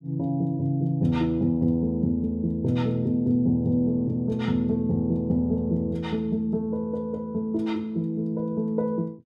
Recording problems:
none

